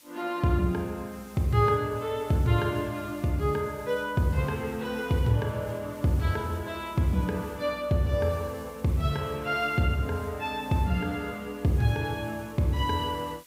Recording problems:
background hiss; slope +1 dB per octave, SNR 24 dB

